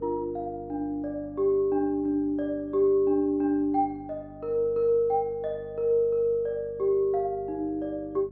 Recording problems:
hum; 50 Hz, harmonics up to 900 Hz, SNR 22 dB

